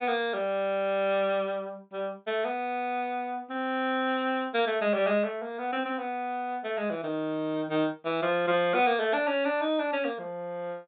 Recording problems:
treble missing; nothing above 4 kHz

